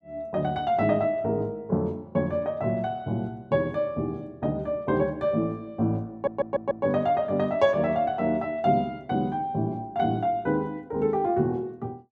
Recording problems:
stutter; at 6 s

